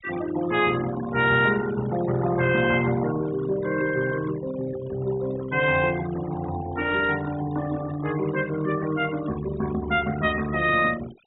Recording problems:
treble cut off; nothing above 4 kHz
noise reduction artefacts; signal-to-artefact ratio 15 dB

